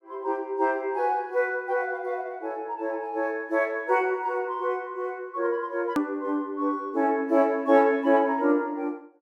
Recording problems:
click at an edit; at 6 s

